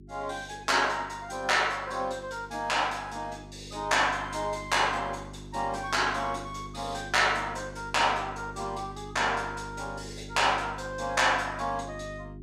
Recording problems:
hum; 50 Hz, harmonics up to 400 Hz, SNR 16 dB

